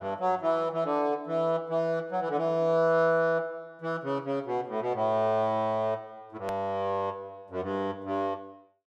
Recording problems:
click at an edit; at 6.5 s

